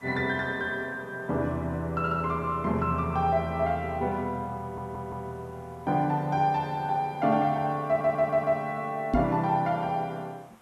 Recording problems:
background hiss; SNR 28 dB
stutter; at 4.5 s and at 8 s
microphone bump; at 9 s; peak +6 dB vs average level

